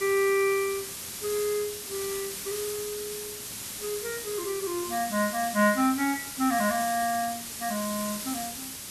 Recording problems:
background hiss; SNR 6 dB

